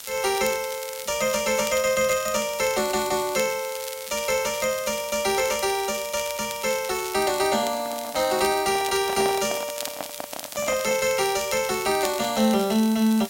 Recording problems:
background hiss; slope +1 dB per octave, SNR 15 dB
crackle; vinyl, SNR 14 dB
microphone handling noise; from 7.5 to 11 s; peak -2 dB vs average level

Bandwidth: 16 kHz